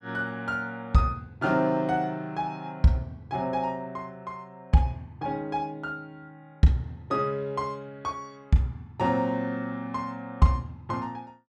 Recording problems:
none

